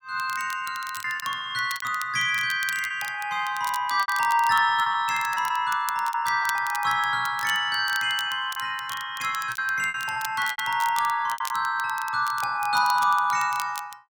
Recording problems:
crackle; vinyl, SNR 15 dB
lost packets; 8% of the sound replaced, filled with repeated pitch periods

